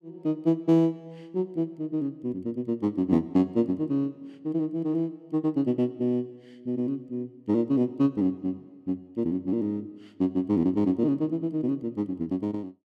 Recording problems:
none

